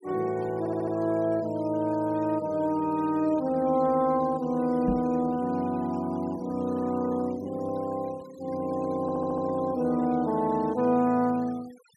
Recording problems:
noise reduction artefacts; signal-to-artefact ratio 24 dB
stutter; at 0.5 s and at 9 s
microphone thump; at 5 s; peak +2 dB vs average level

